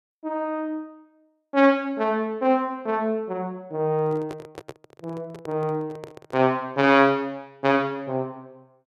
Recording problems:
microphone handling noise; from 4 to 6.5 s; peak -9 dB vs average level

